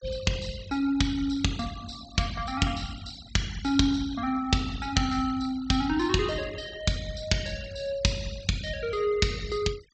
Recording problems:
treble cut off; nothing above 8 kHz
denoising artefacts; signal-to-artefact ratio 18 dB

